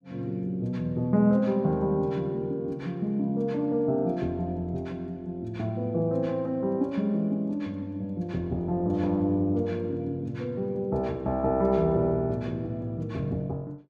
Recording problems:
none

